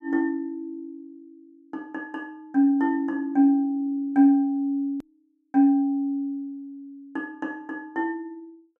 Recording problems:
edit click; at 5 s

